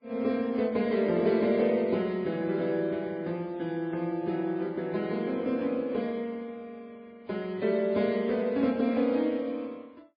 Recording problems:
codec artefacts; Vorbis, then MP3, log-spectral distance 2 dB, nothing above 4.1 kHz

